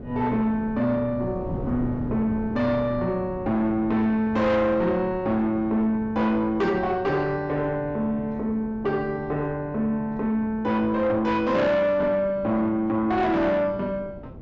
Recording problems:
low-pass filter; nothing above 8 kHz
distortion; soft clipping, signal-to-distortion ratio 10 dB
wind noise; below 330 Hz, SNR 15 dB

